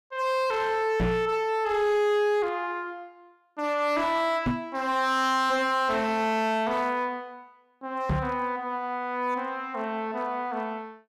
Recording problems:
distorted audio; hard clipping, signal-to-distortion ratio 11 dB
knock on the microphone; at 1 s, at 4.5 s and at 8 s; peak +4 dB vs average level

